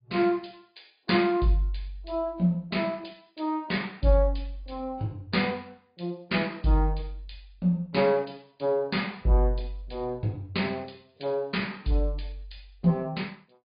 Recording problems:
treble missing; nothing above 4.9 kHz
lossy compression; AAC, log-spectral distance 3 dB

